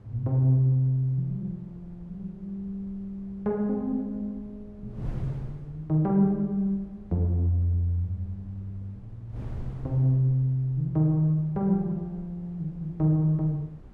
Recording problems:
wind on the microphone; below 160 Hz, SNR 20 dB

